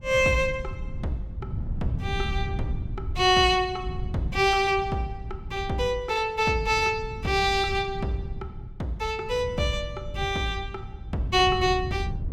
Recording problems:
wind noise; below 120 Hz, SNR 10 dB

